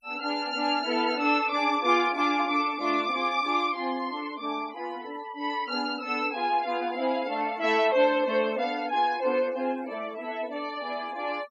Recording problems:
noise reduction artefacts; signal-to-artefact ratio 20 dB

